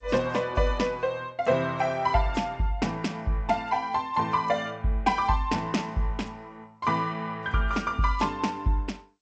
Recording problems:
lossy compression; G.722, then AAC, log-spectral distance 2 dB

